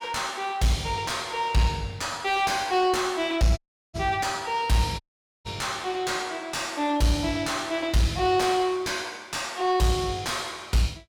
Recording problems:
distortion; soft clipping, signal-to-distortion ratio 7 dB
dropout; at 3.5 s and at 5 s

